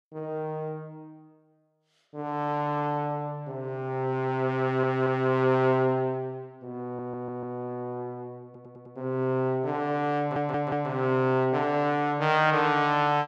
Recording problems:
audio stuttering; 4 times, first at 4.5 s

